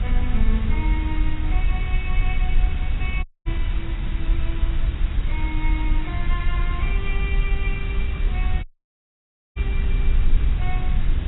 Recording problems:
codec artefacts; AAC, log-spectral distance 2 dB
background hiss; SNR 6 dB
rumble; below 56 Hz, SNR -10 dB
audio cutting out; at 3 s and at 8.5 s for 1 s

